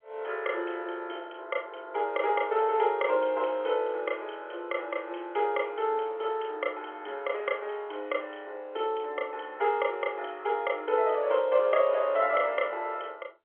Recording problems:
phone line; 300 Hz to 3.3 kHz, G.711

